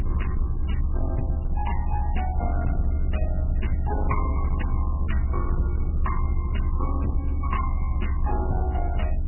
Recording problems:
codec artefacts; MP3, log-spectral distance 2 dB, nothing above 2.9 kHz
distortion; hard clipping, signal-to-distortion ratio 10 dB
mains hum; 60 Hz, harmonics up to 360 Hz, SNR 6 dB
rumble; below 72 Hz, strongest tone 28 Hz, SNR -6 dB

